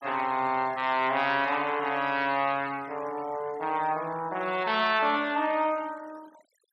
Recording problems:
denoising artefacts; signal-to-artefact ratio 21 dB

